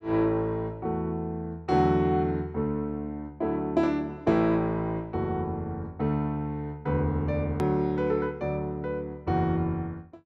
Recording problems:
click at an edit; at 7.5 s

